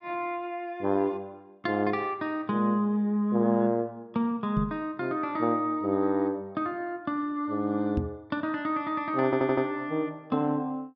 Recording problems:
microphone thump; at 4.5 s and at 8 s; peak +3 dB vs average level
stutter; at 9.5 s

